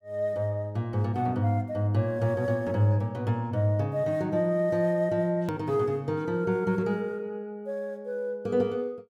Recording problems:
hard cut with a click; at 5.5 s

